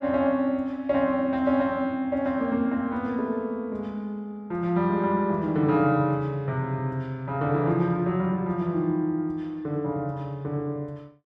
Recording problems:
none

